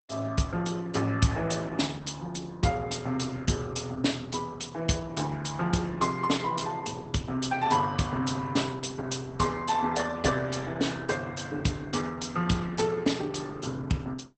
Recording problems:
lossy compression; Opus, log-spectral distance 5 dB, nothing above 8.2 kHz

